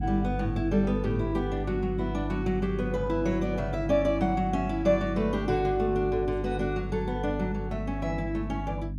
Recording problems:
hum; 50 Hz, harmonics up to 300 Hz, SNR 6 dB

